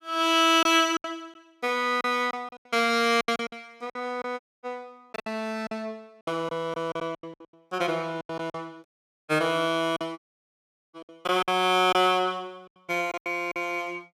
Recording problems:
packet loss; 12% of the sound replaced, filled with silence
dropout; at 4.5 s, at 9 s and at 10 s for 1 s

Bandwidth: 15 kHz